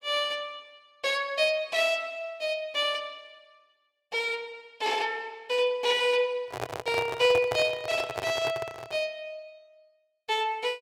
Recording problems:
microphone handling noise; from 6.5 to 9 s; peak -1 dB vs average level

